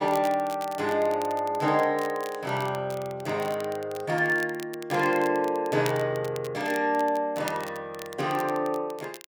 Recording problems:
crackling; vinyl, SNR 18 dB

